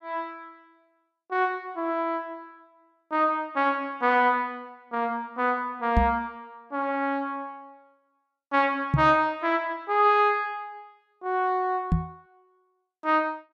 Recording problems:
microphone thump; at 6 s, at 9 s and at 12 s; peak +7 dB vs average level

